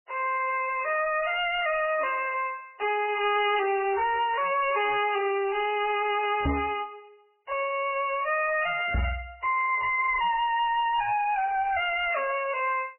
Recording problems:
lossy compression; MP3, log-spectral distance 5 dB, nothing above 2.5 kHz
distorted audio; soft clipping, signal-to-distortion ratio 8 dB
microphone thump; at 6.5 s and at 9 s; peak +3 dB vs average level

